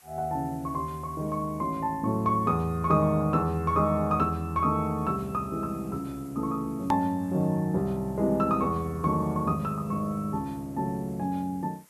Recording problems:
hiss; SNR 27 dB
click at an edit; at 7 s

